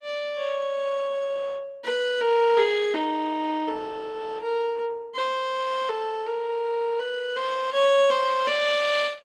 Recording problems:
lossy codec; Opus, log-spectral distance 3 dB, nothing above 11.6 kHz

